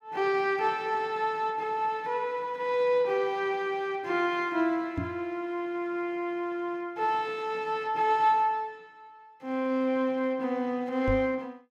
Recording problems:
microphone thump; at 5 s and at 11 s; peak +2 dB vs average level

